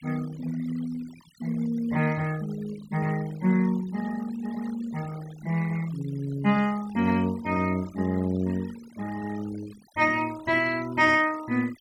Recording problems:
noise reduction artefacts; signal-to-artefact ratio 19 dB

